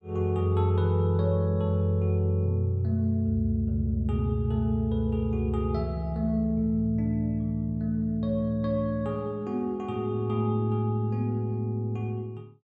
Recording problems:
none

